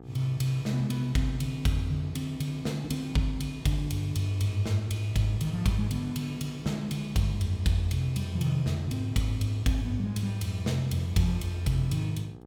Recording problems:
hum; 60 Hz, harmonics up to 1.3 kHz, SNR 19 dB

